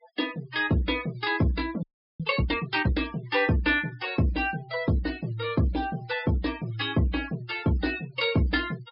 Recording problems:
treble cut off; nothing above 5.5 kHz
noise reduction artefacts; signal-to-artefact ratio 19 dB
frozen audio; at 2 s

